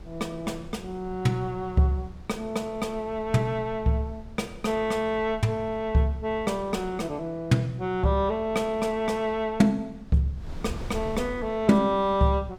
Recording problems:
wind noise; below 140 Hz, SNR 18 dB

